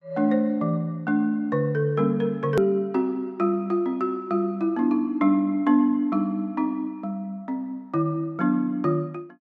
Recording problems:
edit click; at 2.5 s

